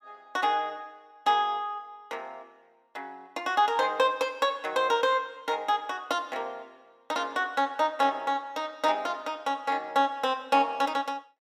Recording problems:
none

